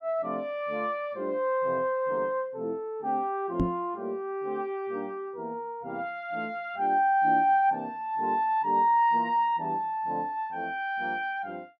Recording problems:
microphone thump; at 3.5 s; peak +5 dB vs average level

